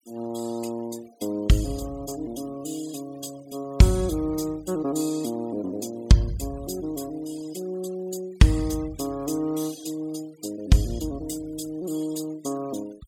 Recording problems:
noise reduction artefacts; signal-to-artefact ratio 21 dB

